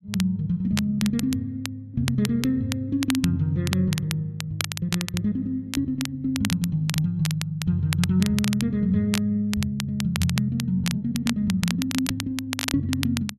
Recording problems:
crackling; vinyl, SNR 8 dB

